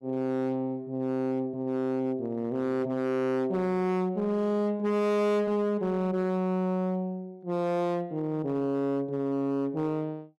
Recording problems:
distortion; hard clipping, signal-to-distortion ratio 11 dB

